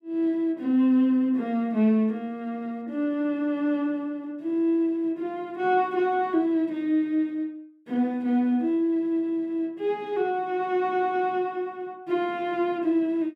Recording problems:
none

